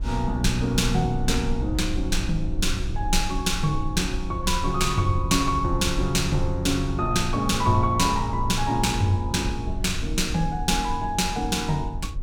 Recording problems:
rumble; below 60 Hz, SNR 8 dB

